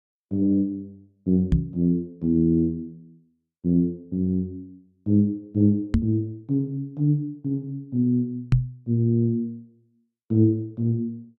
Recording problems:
microphone bump; at 1.5 s, at 6 s and at 8.5 s; peak +8 dB vs average level

